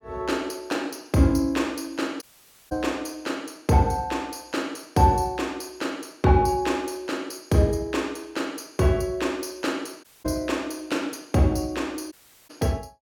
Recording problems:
audio cutting out; at 2 s, at 10 s and at 12 s

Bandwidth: 17.5 kHz